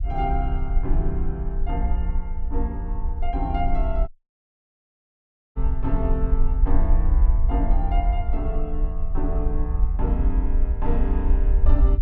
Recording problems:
low-frequency rumble; below 54 Hz, SNR -6 dB
audio cutting out; at 4 s for 1.5 s

